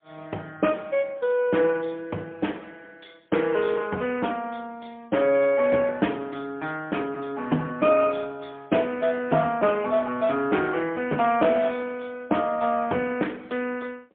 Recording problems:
phone line; 240 Hz to 3.3 kHz, AMR-NB, then MP3

